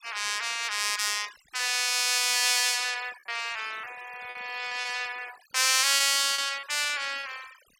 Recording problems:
noise reduction artefacts; signal-to-artefact ratio 18 dB
packet loss; 8% of the sound replaced, filled with repeated pitch periods

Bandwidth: 16.5 kHz